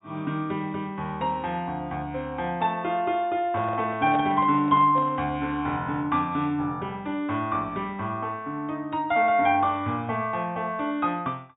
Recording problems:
treble cut off; nothing above 4 kHz
microphone handling noise; from 3.5 to 5.5 s; peak -5 dB vs average level

